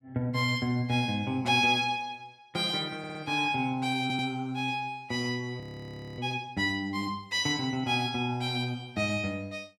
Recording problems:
audio stuttering; at 3 s and at 4 s
frozen audio; at 5.5 s for 0.5 s

